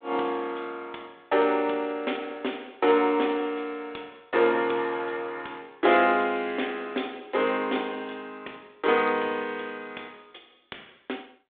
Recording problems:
phone line; 260 Hz to 3.6 kHz, G.726

